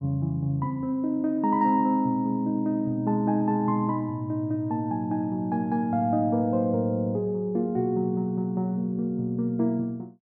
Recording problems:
none

